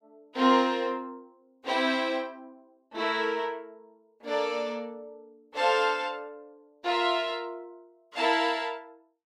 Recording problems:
none

